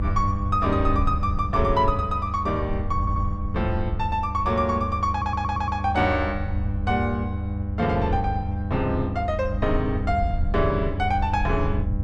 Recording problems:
mains hum; 50 Hz, harmonics up to 800 Hz, SNR 7 dB
rumble; below 78 Hz, SNR 4 dB
audio stuttering; at 3 s and at 5 s

